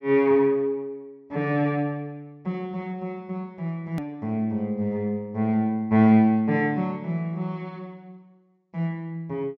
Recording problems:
treble missing; nothing above 8 kHz
click at an edit; at 4 s

